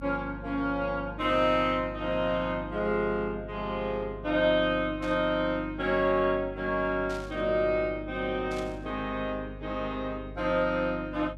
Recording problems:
hum; 50 Hz, harmonics up to 300 Hz, SNR 15 dB
burst of static; at 5 s, at 7 s and at 8.5 s; peak -12 dB vs average level

